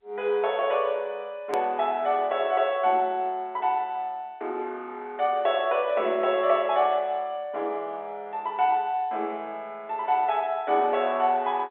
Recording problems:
telephone audio; 280 Hz to 3.6 kHz, G.711
click at an edit; at 1.5 s

